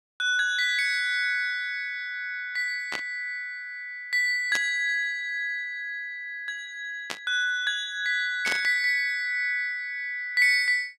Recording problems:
burst of static; 4 times, first at 3 s; peak -1 dB vs average level

